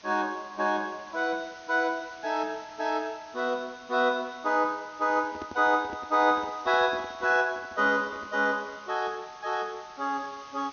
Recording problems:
low-pass filter; nothing above 6.5 kHz
hiss; slope 0 dB per octave, SNR 23 dB
handling noise; from 5 to 8.5 s; peak -8 dB vs average level

